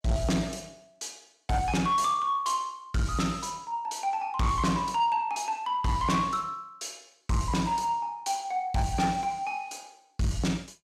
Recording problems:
distorted audio; soft clipping, signal-to-distortion ratio 10 dB

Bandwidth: 14 kHz